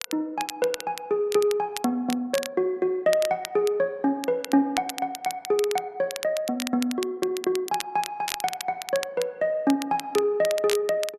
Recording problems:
crackling; vinyl, SNR 10 dB

